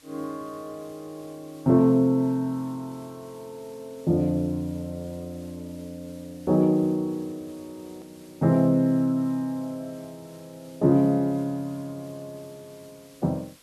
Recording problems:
background hiss; SNR 28 dB
edit click; at 8 s

